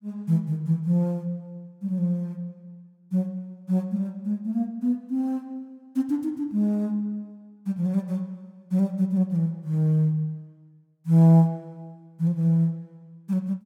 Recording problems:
none

